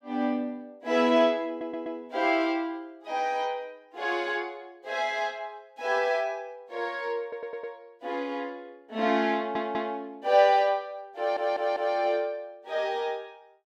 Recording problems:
stutter; 4 times, first at 1.5 s

